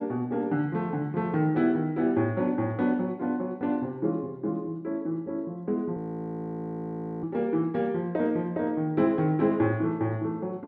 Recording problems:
audio freezing; at 6 s for 1.5 s

